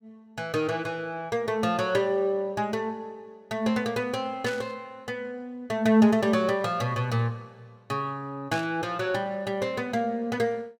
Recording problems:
burst of static; at 4.5 s and at 8.5 s; peak -6 dB vs average level

